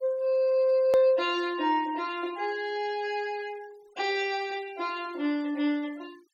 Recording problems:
denoising artefacts; signal-to-artefact ratio 25 dB
edit click; at 1 s

